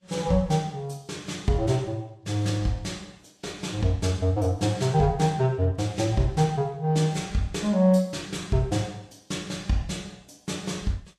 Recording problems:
codec artefacts; Vorbis, then Vorbis, log-spectral distance 3 dB, nothing above 12.7 kHz

